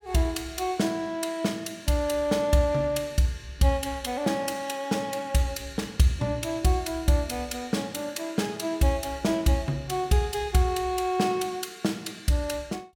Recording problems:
none

